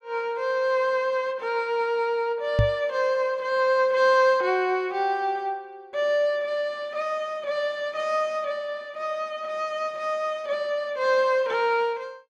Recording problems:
microphone thump; at 2.5 s; peak +6 dB vs average level

